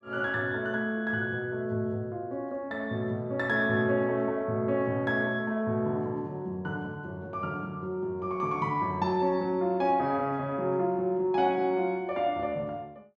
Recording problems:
none

